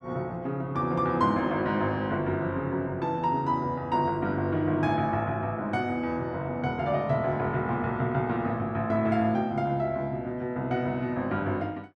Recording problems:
none

